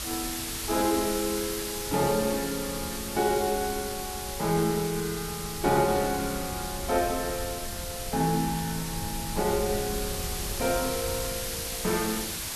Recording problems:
hiss; slope +1 dB per octave, SNR 4 dB
wind on the microphone; below 110 Hz, SNR 13 dB

